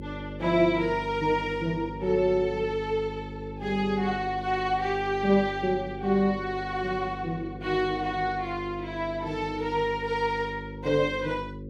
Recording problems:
hum; 50 Hz, harmonics up to 550 Hz, SNR 12 dB

